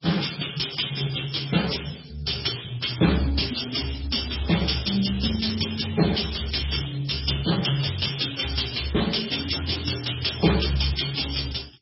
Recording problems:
codec artefacts; Speex, then MP3, log-spectral distance 12 dB, nothing above 5.5 kHz

